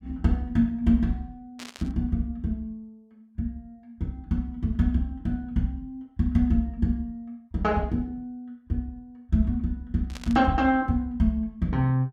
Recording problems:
static burst; at 1.5 s and at 10 s; peak -9 dB vs average level

